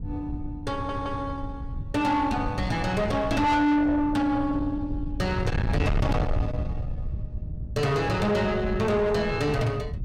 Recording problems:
distorted audio; soft clipping, signal-to-distortion ratio 7 dB
wind noise; below 150 Hz, SNR 7 dB
audio stuttering; at 0.5 s

